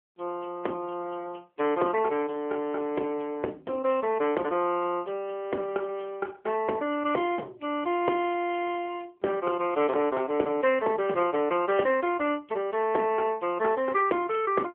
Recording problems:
phone line; 240 Hz to 3.3 kHz, AMR-NB

